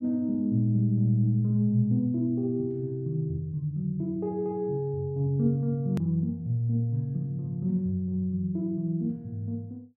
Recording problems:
edit click; at 6 s

